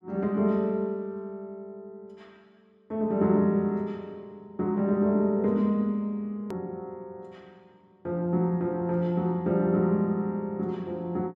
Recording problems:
click at an edit; at 6.5 s

